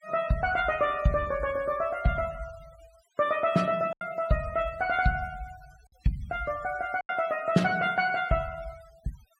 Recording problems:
denoising artefacts; signal-to-artefact ratio 22 dB
lost packets; 1.9% of the sound replaced, filled with silence

